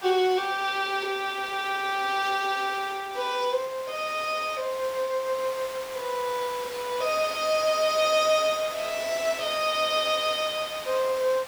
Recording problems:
hiss; SNR 14 dB

